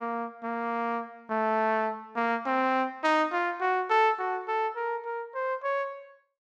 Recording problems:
none

